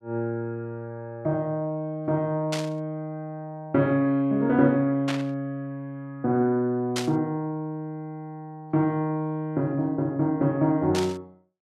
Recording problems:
burst of static; 4 times, first at 2.5 s; peak 0 dB vs average level

